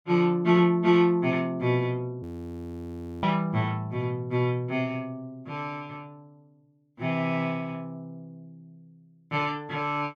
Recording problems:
audio freezing; at 2 s for 1 s

